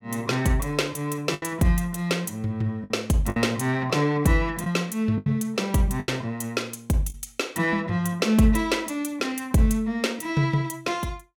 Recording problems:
packet loss; 4% of the sound replaced, filled with the last packet

